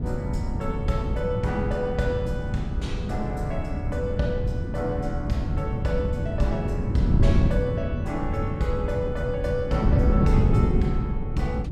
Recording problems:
wind on the microphone; below 170 Hz, SNR -3 dB

